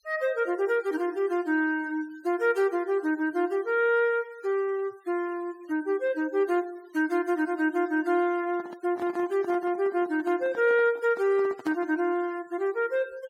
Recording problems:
noise reduction artefacts; signal-to-artefact ratio 26 dB
handling noise; from 8.5 to 12 s; peak -7 dB vs average level

